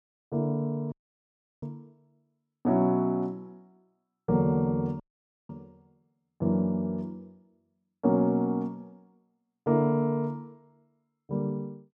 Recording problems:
audio cutting out; at 1 s for 0.5 s and at 5 s

